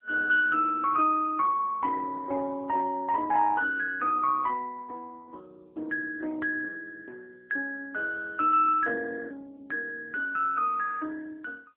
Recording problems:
telephone audio; 280 Hz to 2.2 kHz, AMR-NB

